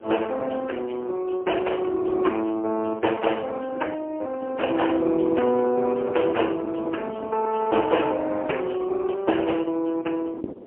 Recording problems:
phone line; 280 Hz to 3.2 kHz, AMR-NB, then MP3
wind noise; below 460 Hz, SNR 15 dB

